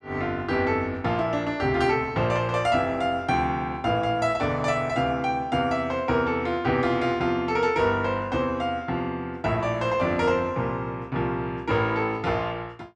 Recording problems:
none

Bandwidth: 12.5 kHz